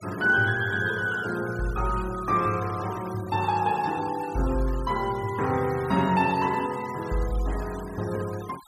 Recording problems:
denoising artefacts; signal-to-artefact ratio 18 dB

